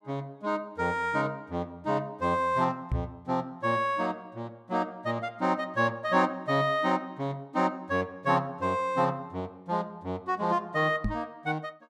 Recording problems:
microphone bump; at 3 s and at 11 s; peak +3 dB vs average level

